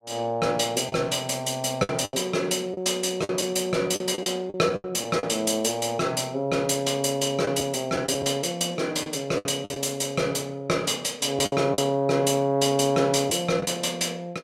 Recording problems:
packet loss; 7% of the sound replaced, filled with the last packet

